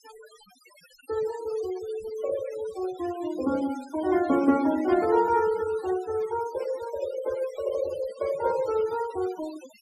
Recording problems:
noise reduction artefacts; signal-to-artefact ratio 17 dB

